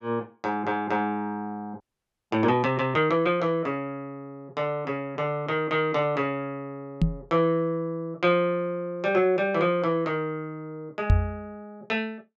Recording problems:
audio freezing; at 2 s for 0.5 s
microphone bump; at 7 s and at 11 s; peak +9 dB vs average level

